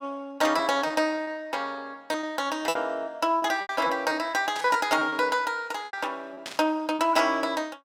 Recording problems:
packet loss; 9% of the sound replaced, filled with repeated pitch periods
burst of static; at 4.5 s and at 6.5 s; peak -5 dB vs average level

